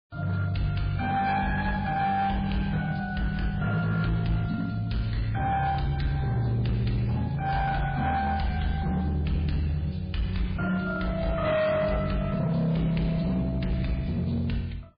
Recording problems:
codec artefacts; MP3, log-spectral distance 2 dB, nothing above 4.6 kHz
distortion; hard clipping, signal-to-distortion ratio 12 dB

